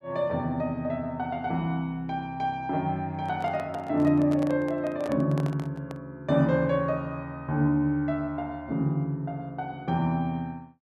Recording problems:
microphone handling noise; from 3 to 6 s; peak -6 dB vs average level

